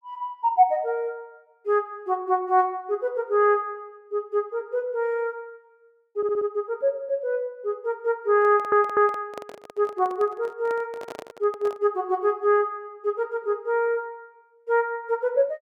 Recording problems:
audio stuttering; at 6 s and at 8.5 s
microphone handling noise; from 8.5 to 12 s; peak -8 dB vs average level

